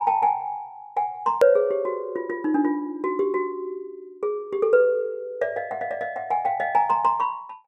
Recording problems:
hard cut with a click; at 1.5 s

